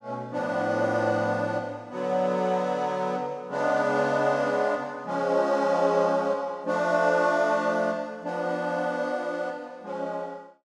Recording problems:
none

